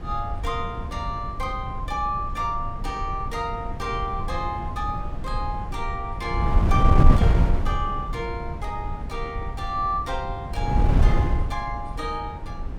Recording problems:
wind on the microphone; below 120 Hz, SNR -2 dB

